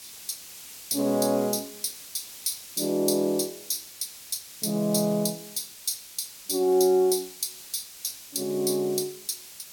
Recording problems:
background hiss; slope +2 dB per octave, SNR 14 dB

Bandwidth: 17 kHz